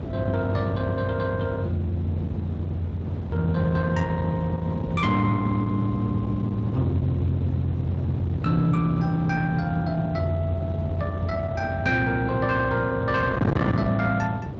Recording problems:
lossy codec; Speex, log-spectral distance 2 dB, nothing above 7.6 kHz
distortion; soft clipping, signal-to-distortion ratio 11 dB
wind on the microphone; below 340 Hz, SNR 6 dB

